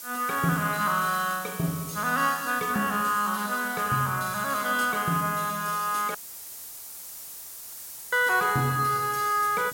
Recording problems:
hiss; SNR 12 dB
crackle; at 0.5 s; loose cable, SNR 28 dB
dropout; at 6 s for 2 s

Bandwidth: 16.5 kHz